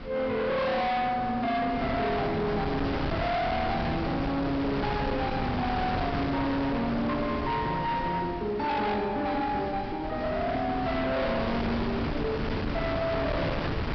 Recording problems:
treble cut off; nothing above 5.5 kHz
distorted audio; hard clipping, signal-to-distortion ratio 7 dB
wind noise; below 980 Hz, SNR 5 dB

